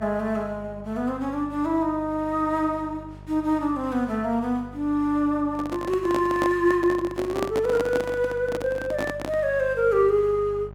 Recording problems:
hum; 50 Hz, harmonics up to 1.2 kHz, SNR 18 dB
handling noise; from 5.5 to 9.5 s; peak +1 dB vs average level

